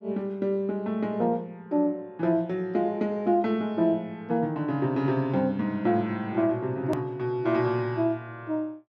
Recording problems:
click at an edit; at 7 s

